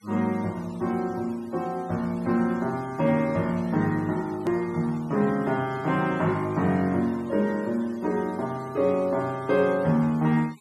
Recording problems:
denoising artefacts; signal-to-artefact ratio 24 dB
click at an edit; at 4.5 s

